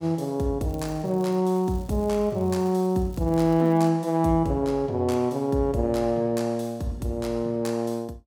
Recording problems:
crackling; from 0.5 to 4 s; loose cable, SNR 28 dB

